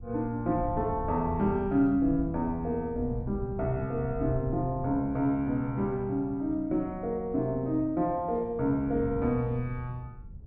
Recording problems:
wind on the microphone; below 120 Hz, SNR 12 dB

